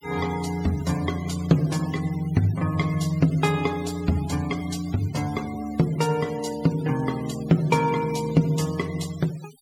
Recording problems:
denoising artefacts; signal-to-artefact ratio 18 dB

